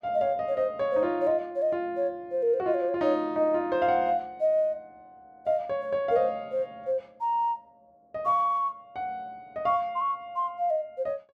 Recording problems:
none

